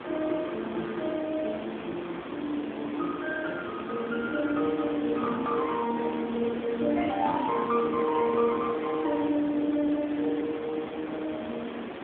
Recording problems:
phone line; 190 Hz to 3.6 kHz, AMR-NB
background hiss; SNR 9 dB

